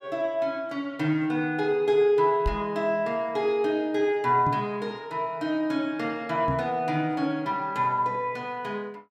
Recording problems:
microphone bump; at 2.5 s, at 4.5 s and at 6.5 s; peak +1 dB vs average level

